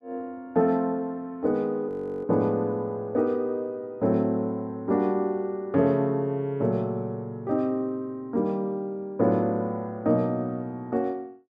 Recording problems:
audio freezing; at 2 s

